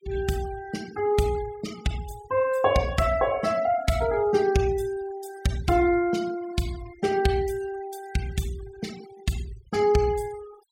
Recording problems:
noise reduction artefacts; signal-to-artefact ratio 17 dB

